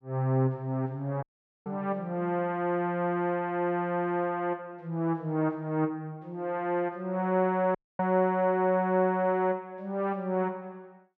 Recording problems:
dropout; at 1 s and at 8 s

